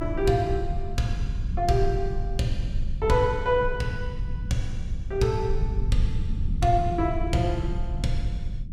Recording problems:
low-frequency rumble; below 76 Hz, SNR 4 dB

